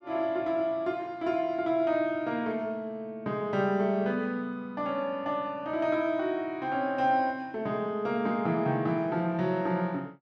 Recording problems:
none

